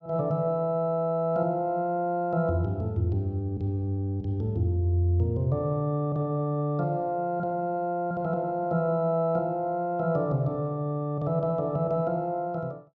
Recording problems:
none

